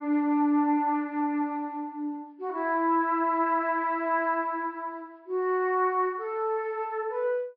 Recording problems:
treble missing; nothing above 5.3 kHz

